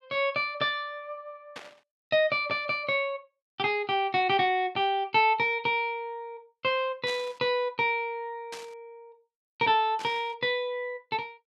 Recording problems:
burst of static; 4 times, first at 1.5 s; peak -9 dB vs average level

